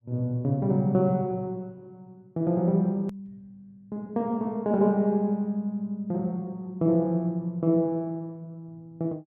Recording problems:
edit click; at 3 s

